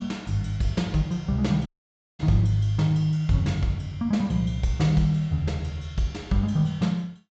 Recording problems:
treble missing; nothing above 8 kHz
audio cutting out; at 1.5 s for 0.5 s

